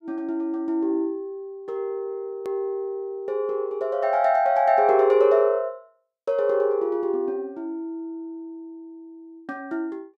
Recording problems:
edit click; at 2.5 s

